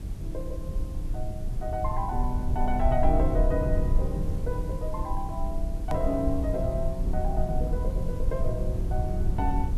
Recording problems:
background hiss; slope -2 dB per octave, SNR 22 dB
rumble; below 66 Hz, SNR -1 dB
click at an edit; at 6 s

